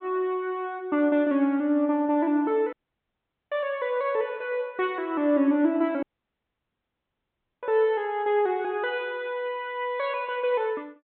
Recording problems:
treble cut off; nothing above 4 kHz
dropout; at 2.5 s for 1 s and at 6 s for 1.5 s

